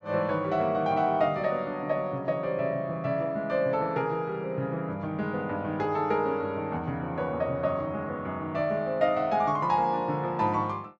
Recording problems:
low-pass filter; nothing above 8 kHz

